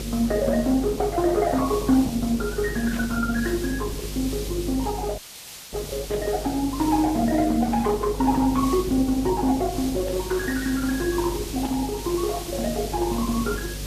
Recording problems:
lossy compression; Opus, then Vorbis, log-spectral distance 2 dB
electrical hum; 50 Hz, harmonics up to 550 Hz, SNR 10 dB
hiss; slope +1 dB per octave, SNR 12 dB
burst of static; 4 times, first at 3 s; peak -8 dB vs average level
audio cutting out; at 5 s for 0.5 s

